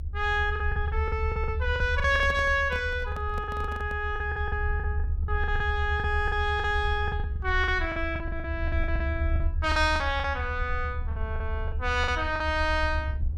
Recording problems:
rumble; below 78 Hz, SNR 4 dB
lost packets; 14% of the sound replaced, filled with the last packet
microphone handling noise; from 2 to 4 s; peak -7 dB vs average level

